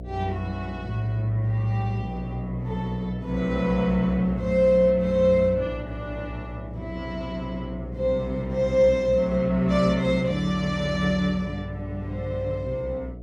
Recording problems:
electrical hum; 60 Hz, harmonics up to 720 Hz, SNR 12 dB

